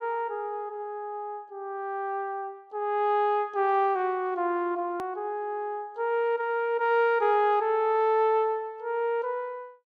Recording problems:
click at an edit; at 5 s

